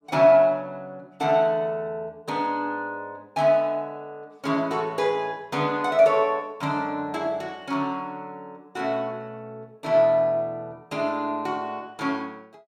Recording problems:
none

